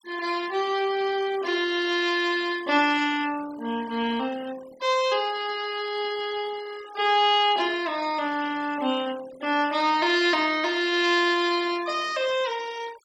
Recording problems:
denoising artefacts; signal-to-artefact ratio 19 dB

